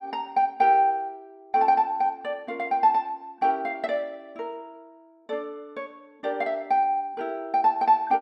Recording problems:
none

